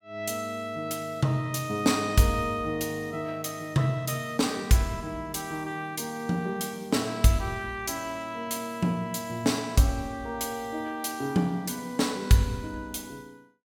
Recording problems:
none

